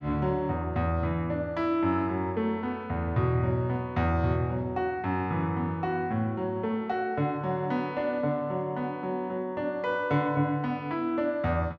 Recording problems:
none

